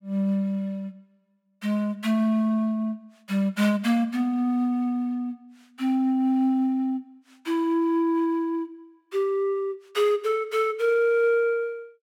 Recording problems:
none

